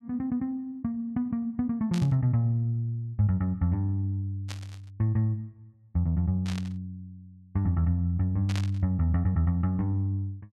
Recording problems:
burst of static; 4 times, first at 2 s; peak -6 dB vs average level

